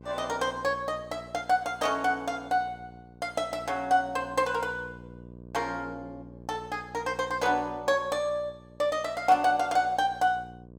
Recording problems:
hum; 60 Hz, harmonics up to 660 Hz, SNR 20 dB

